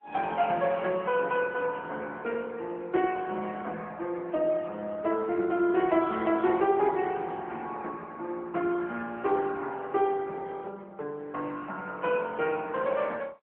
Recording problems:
telephone audio; 240 Hz to 3.4 kHz, AMR-NB

